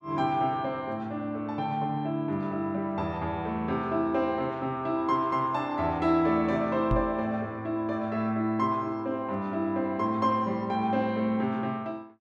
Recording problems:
microphone thump; at 7 s; peak +3 dB vs average level

